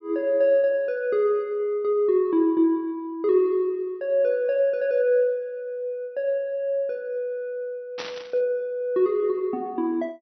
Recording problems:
static burst; at 8 s; peak -6 dB vs average level

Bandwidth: 6 kHz